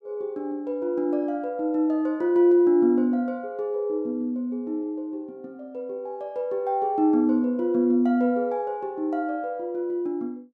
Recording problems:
none

